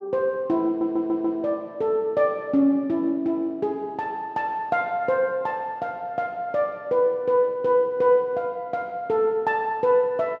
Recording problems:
audio stuttering; at 0.5 s

